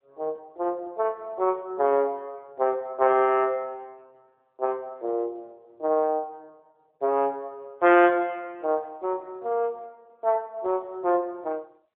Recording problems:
telephone audio; 300 Hz to 3.3 kHz, AMR-NB

